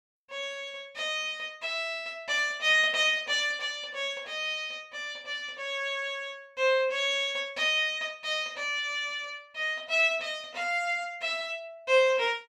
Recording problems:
none

